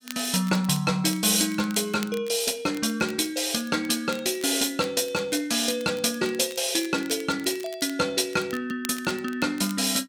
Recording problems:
crackling; vinyl, SNR 19 dB

